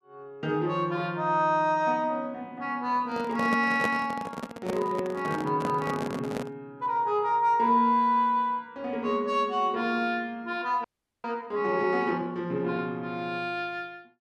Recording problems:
microphone handling noise; from 3 to 6.5 s; peak +2 dB vs average level
frozen audio; at 11 s

